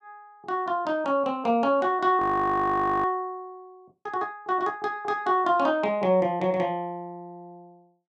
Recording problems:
frozen audio; at 2 s for 1 s

